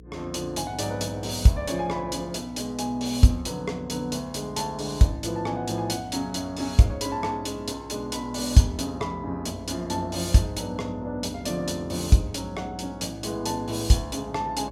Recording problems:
hum; 60 Hz, harmonics up to 480 Hz, SNR 20 dB

